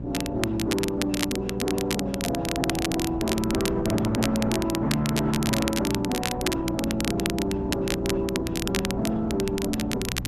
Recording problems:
lossy codec; Opus, log-spectral distance 2 dB
distorted audio; soft clipping, signal-to-distortion ratio 12 dB
electrical hum; 60 Hz, harmonics up to 600 Hz, SNR 9 dB
wind on the microphone; below 260 Hz, SNR 12 dB
crackling; vinyl, SNR 5 dB

